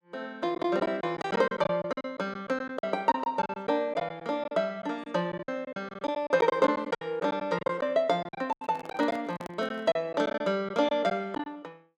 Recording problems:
packet loss; 13% of the sound replaced, filled with silence
handling noise; from 8.5 to 10 s; peak -7 dB vs average level

